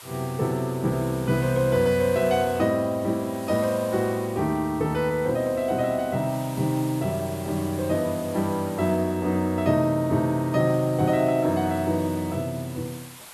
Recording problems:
hiss; SNR 18 dB

